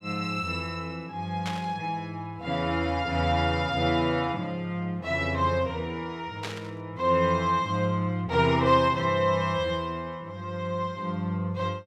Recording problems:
burst of static; at 1.5 s and at 6.5 s; peak -4 dB vs average level

